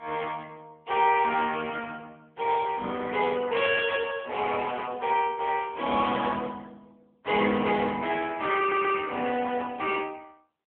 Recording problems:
telephone audio; 220 Hz to 3.3 kHz, AMR-NB
audio stuttering; at 8.5 s

